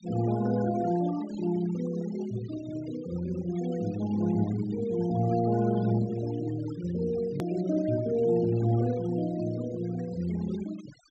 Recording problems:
low-pass filter; nothing above 8 kHz
denoising artefacts; signal-to-artefact ratio 17 dB
edit click; at 7.5 s

